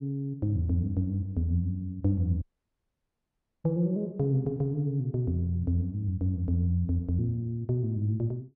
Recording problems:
dropout; at 2.5 s for 1 s

